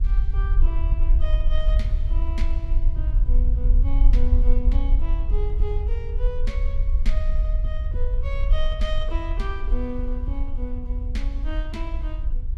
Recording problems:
hum; 60 Hz, harmonics up to 1.4 kHz, SNR 25 dB
low-frequency rumble; below 48 Hz, strongest tone 22 Hz, SNR -11 dB
wind on the microphone; below 110 Hz, SNR 16 dB

